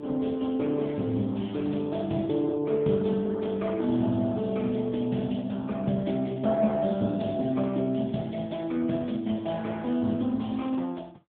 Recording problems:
telephone audio; 110 Hz to 3.5 kHz, AMR-NB

